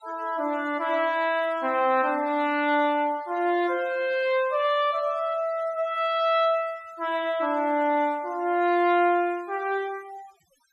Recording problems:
denoising artefacts; signal-to-artefact ratio 24 dB

